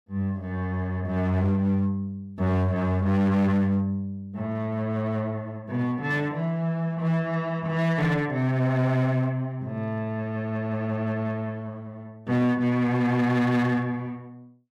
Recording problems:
distorted audio; hard clipping, signal-to-distortion ratio 10 dB

